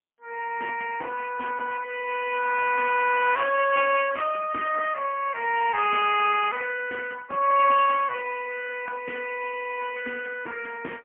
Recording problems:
telephone audio; 370 Hz to 3.1 kHz, AMR-NB, then MP3

